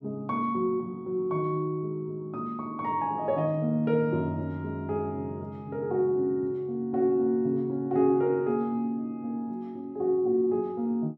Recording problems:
none

